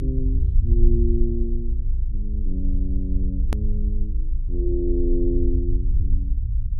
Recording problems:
rumble; below 58 Hz, strongest tone 26 Hz, SNR -6 dB
click at an edit; at 3.5 s

